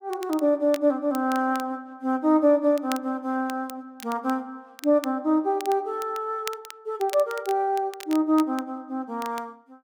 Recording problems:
crackle; vinyl, SNR 18 dB

